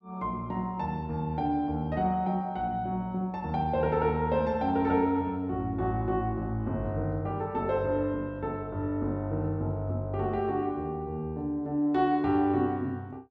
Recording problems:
none

